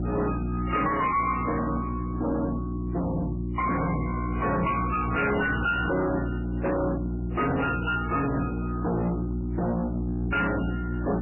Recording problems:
codec artefacts; MP3, then MP3, log-spectral distance 4 dB, nothing above 2.7 kHz
distortion; hard clipping, signal-to-distortion ratio 6 dB
hum; 60 Hz, harmonics up to 360 Hz, SNR 3 dB

